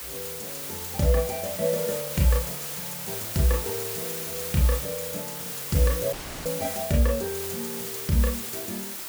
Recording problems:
background hiss; slope 0 dB per octave, SNR 4 dB
audio cutting out; at 6 s

